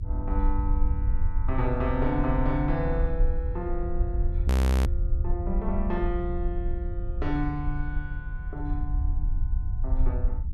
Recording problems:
mains hum; 60 Hz, harmonics up to 300 Hz, SNR 17 dB
low-frequency rumble; below 66 Hz, SNR -3 dB
audio freezing; at 4.5 s

